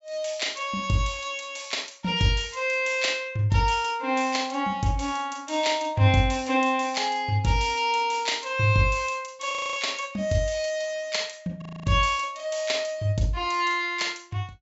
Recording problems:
treble cut off; nothing above 8 kHz
audio freezing; at 9.5 s and at 12 s

